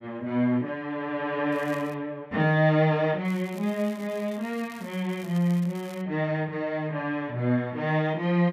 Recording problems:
crackle; at 1.5 s and from 3.5 to 6 s; loose cable, SNR 23 dB

